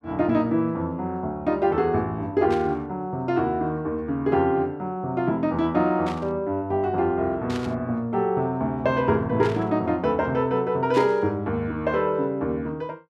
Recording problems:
static burst; 5 times, first at 2.5 s; peak -7 dB vs average level

